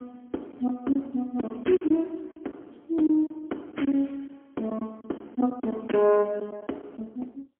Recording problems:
telephone audio; 220 Hz to 3.3 kHz, AMR-NB, then MP3
lost packets; 7% of the sound replaced, filled with silence

